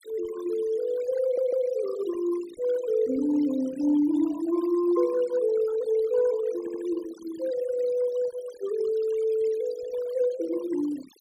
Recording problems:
denoising artefacts; signal-to-artefact ratio 20 dB
stutter; at 1 s and at 6.5 s

